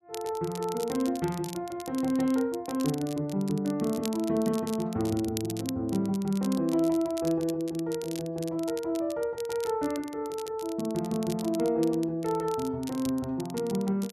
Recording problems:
crackling; vinyl, SNR 15 dB

